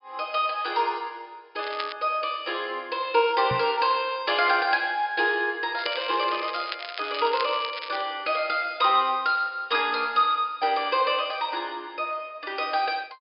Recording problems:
low-pass filter; nothing above 5.5 kHz
crackle; at 1.5 s and from 6 to 8 s; loose cable, SNR 12 dB
knock on the microphone; at 3.5 s; peak -4 dB vs average level

